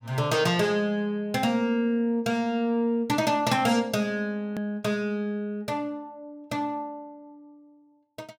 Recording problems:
hard cut with a click; at 4.5 s

